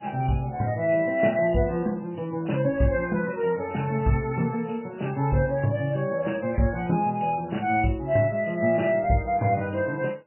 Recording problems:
codec artefacts; MP3, log-spectral distance 4 dB, nothing above 2.9 kHz

